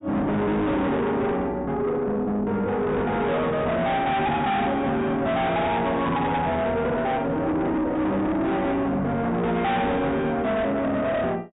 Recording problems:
low-pass filter; nothing above 4 kHz
distortion; soft clipping, signal-to-distortion ratio 6 dB

